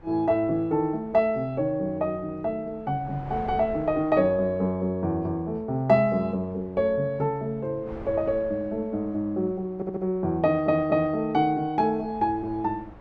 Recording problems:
wind noise; below 650 Hz, SNR 21 dB
audio stuttering; at 10 s

